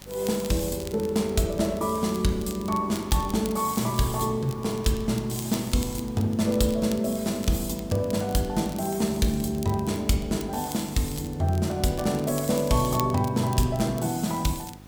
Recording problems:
hum; 50 Hz, harmonics up to 700 Hz, SNR 21 dB
background hiss; slope -3 dB per octave, SNR 25 dB
crackle; vinyl, SNR 18 dB

